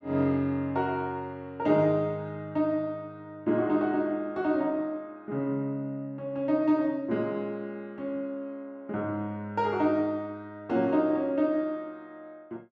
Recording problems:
none

